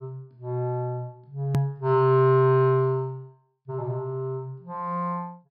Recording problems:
treble missing; nothing above 5.5 kHz
hard cut with a click; at 1.5 s

